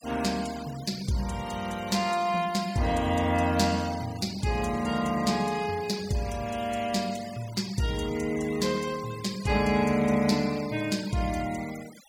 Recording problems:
noise reduction artefacts; signal-to-artefact ratio 16 dB

